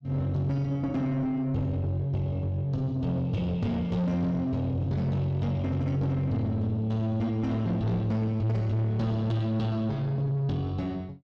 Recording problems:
distortion; soft clipping, signal-to-distortion ratio 11 dB

